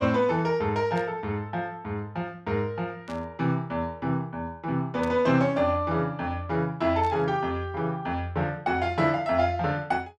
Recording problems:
burst of static; 4 times, first at 1 s; peak -12 dB vs average level

